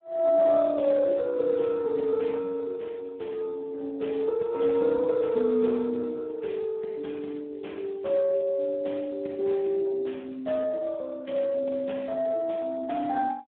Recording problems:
phone line; 170 Hz to 3.2 kHz, Speex

